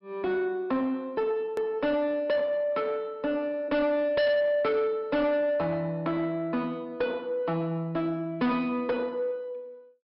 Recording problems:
treble cut off; nothing above 5.3 kHz
distortion; soft clipping, signal-to-distortion ratio 7 dB
edit click; at 1.5 s

